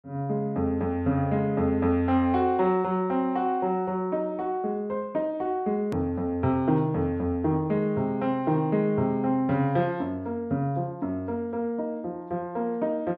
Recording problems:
edit click; at 6 s

